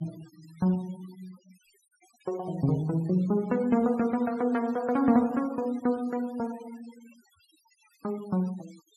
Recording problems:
denoising artefacts; signal-to-artefact ratio 24 dB

